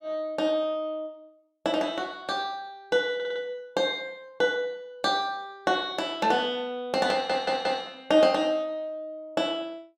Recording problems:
stutter; at 3 s and at 7 s

